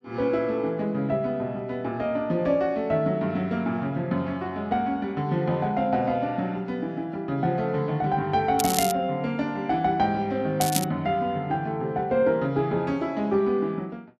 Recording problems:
crackling; at 8.5 s and at 11 s; loose cable, SNR 4 dB

